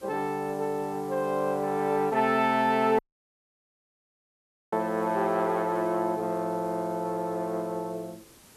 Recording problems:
background hiss; slope -3 dB per octave, SNR 25 dB
audio cutting out; at 3 s for 1.5 s

